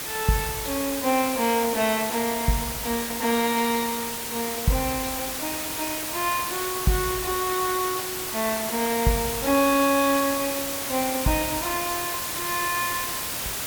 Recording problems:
background hiss; slope -1 dB per octave, SNR 2 dB

